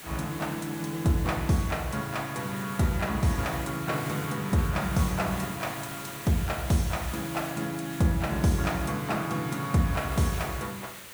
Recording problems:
background hiss; SNR 12 dB

